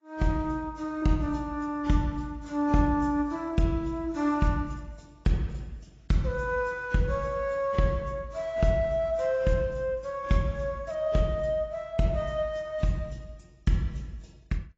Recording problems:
lossy compression; AAC, log-spectral distance 2 dB

